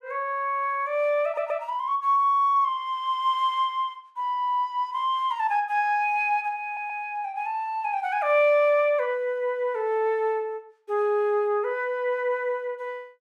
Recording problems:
stutter; at 1.5 s and at 6.5 s

